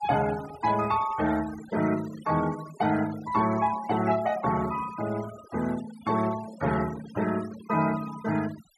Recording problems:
denoising artefacts; signal-to-artefact ratio 15 dB

